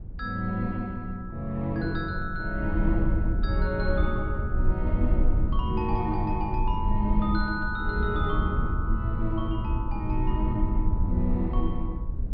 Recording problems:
low-pass filter; nothing above 5.5 kHz
rumble; below 80 Hz, SNR -1 dB

